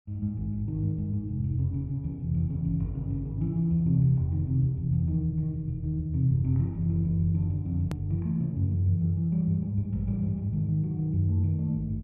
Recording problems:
hard cut with a click; at 8 s

